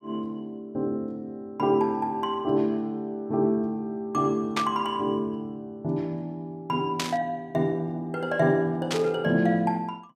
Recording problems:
static burst; at 4.5 s, at 7 s and at 9 s; peak +2 dB vs average level

